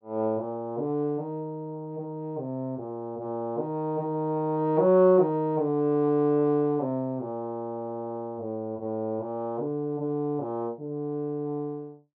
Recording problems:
treble cut off; nothing above 5.5 kHz

